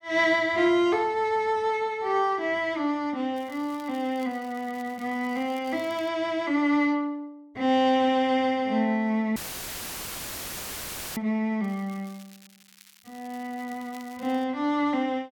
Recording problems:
crackling; from 3.5 to 6 s and from 12 to 14 s; loose cable, SNR 26 dB
dropout; at 9.5 s for 2 s; filled with static

